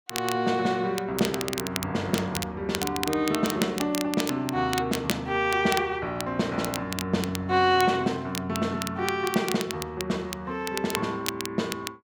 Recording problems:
crackling; vinyl, SNR 8 dB

